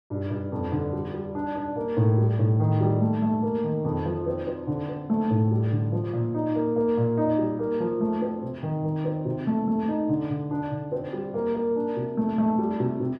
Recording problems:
none

